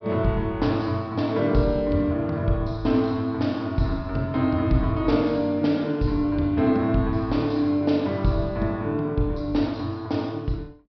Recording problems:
treble missing; nothing above 5.5 kHz

